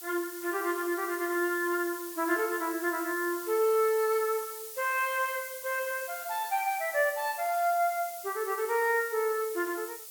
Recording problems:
background hiss; SNR 11 dB

